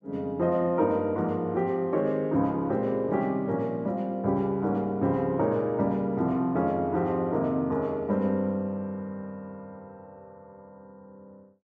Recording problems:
none

